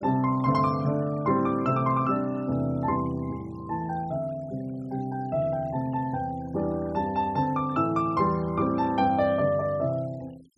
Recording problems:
denoising artefacts; signal-to-artefact ratio 26 dB

